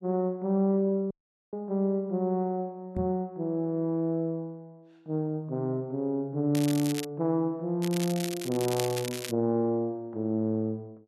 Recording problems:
audio cutting out; at 1 s
microphone thump; at 3 s; peak -3 dB vs average level
crackling; at 6.5 s and from 8 to 9.5 s; loose cable, SNR 9 dB

